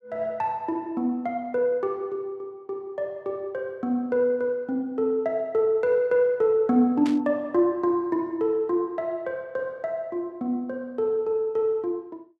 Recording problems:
static burst; at 7 s; peak -8 dB vs average level

